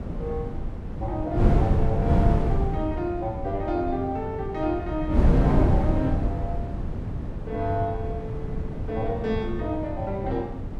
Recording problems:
wind on the microphone; below 190 Hz, SNR -2 dB

